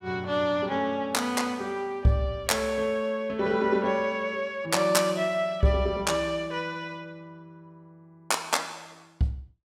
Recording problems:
none

